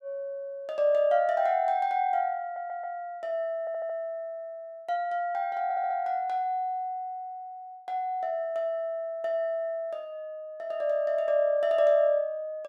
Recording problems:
stutter; at 2.5 s, at 3.5 s and at 5.5 s

